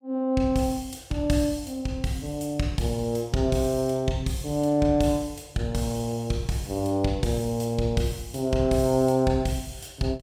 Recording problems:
none

